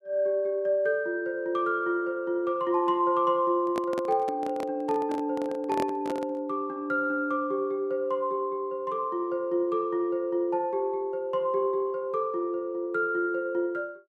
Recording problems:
microphone handling noise; from 3.5 to 6.5 s; peak 0 dB vs average level

